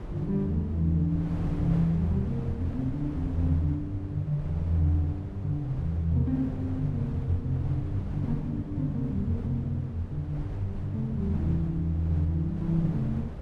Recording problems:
wind on the microphone; below 190 Hz, SNR 11 dB

